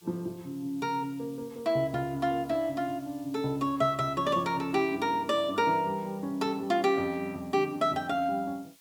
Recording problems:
background hiss; slope +1 dB per octave, SNR 27 dB

